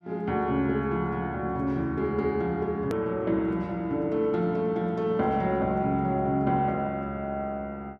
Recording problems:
edit click; at 3 s

